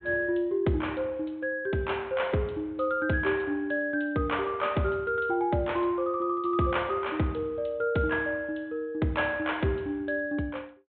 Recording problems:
treble cut off; nothing above 4 kHz

